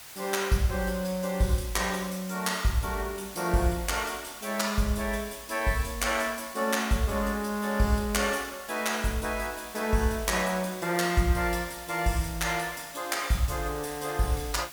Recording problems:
hiss; SNR 14 dB

